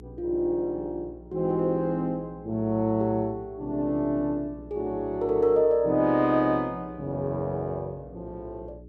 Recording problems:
hum; 60 Hz, harmonics up to 420 Hz, SNR 21 dB

